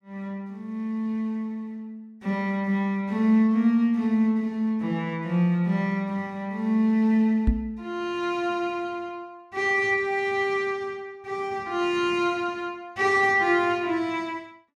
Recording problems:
microphone bump; at 7.5 s; peak +5 dB vs average level

